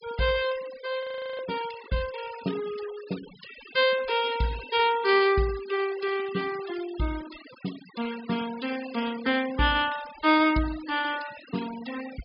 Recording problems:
treble cut off; nothing above 5.5 kHz
denoising artefacts; signal-to-artefact ratio 16 dB
frozen audio; at 1 s

